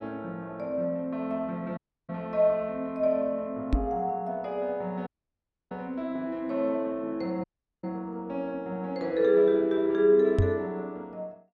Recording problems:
audio cutting out; at 2 s, at 5 s for 0.5 s and at 7.5 s
knock on the microphone; at 3.5 s and at 10 s; peak +7 dB vs average level

